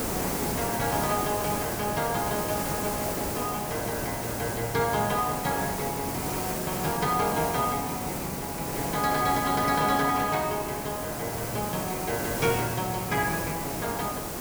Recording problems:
hiss; SNR 2 dB

